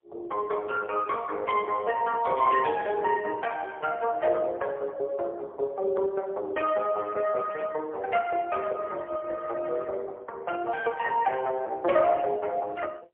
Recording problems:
phone line; 320 Hz to 2.8 kHz, AMR-NB, then MP3

